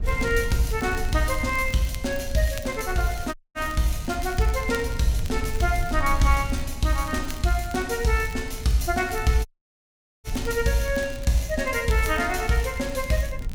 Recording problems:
rumble; below 72 Hz, SNR 10 dB
crackling; vinyl, SNR 20 dB
dropout; at 3.5 s and at 9.5 s for 1 s

